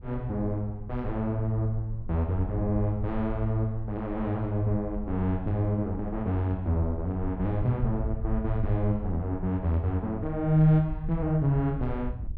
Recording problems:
wind noise; below 66 Hz, SNR 11 dB

